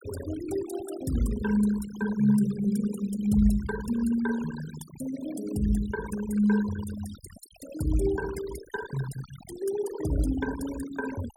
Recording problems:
noise reduction artefacts; signal-to-artefact ratio 15 dB

